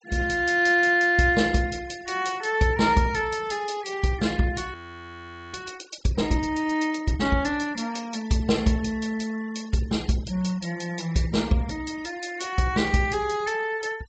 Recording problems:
low-pass filter; nothing above 8 kHz
denoising artefacts; signal-to-artefact ratio 22 dB
audio freezing; at 4.5 s for 1 s

